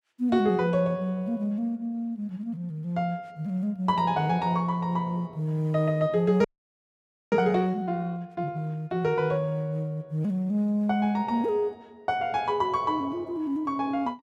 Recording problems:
audio freezing; at 6.5 s for 1 s

